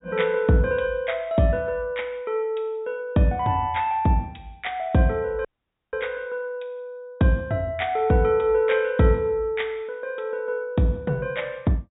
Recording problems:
treble missing; nothing above 4 kHz
audio cutting out; at 5.5 s

